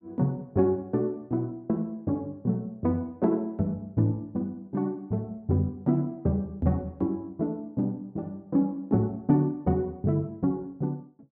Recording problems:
none

